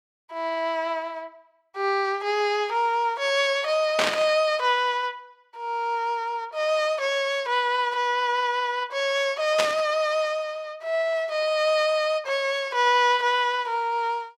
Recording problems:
burst of static; at 4 s and at 9.5 s; peak +4 dB vs average level

